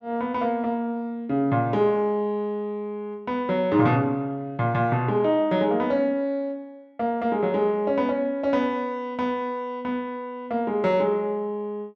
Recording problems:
none

